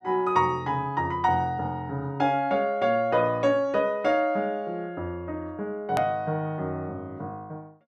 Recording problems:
edit click; at 6 s

